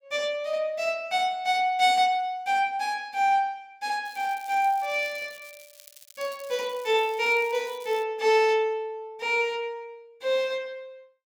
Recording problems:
crackle; from 4 to 8 s; loose cable, SNR 23 dB

